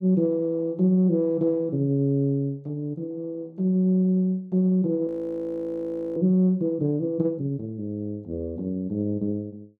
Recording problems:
frozen audio; at 5 s for 1 s

